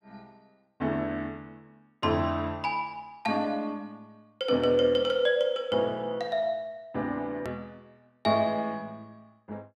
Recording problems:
hard cut with a click; at 7.5 s

